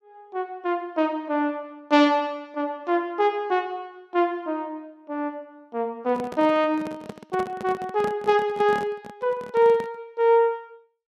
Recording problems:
microphone handling noise; from 6 to 10 s; peak -5 dB vs average level

